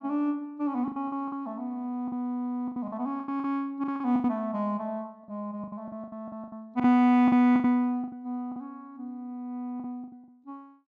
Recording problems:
packet loss; 13% of the sound replaced, filled with the last packet

